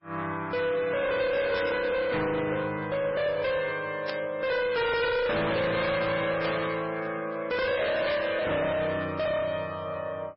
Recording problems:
lossy codec; MP3, log-spectral distance 4 dB, nothing above 5.2 kHz
distorted audio; hard clipping, signal-to-distortion ratio 6 dB
static burst; 4 times, first at 1.5 s; peak -3 dB vs average level

